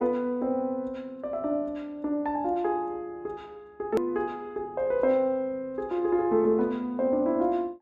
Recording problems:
hard cut with a click; at 4 s

